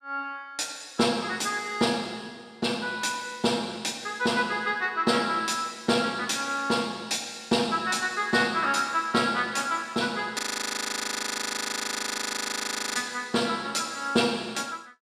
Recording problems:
audio freezing; at 10 s for 2.5 s

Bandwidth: 15.5 kHz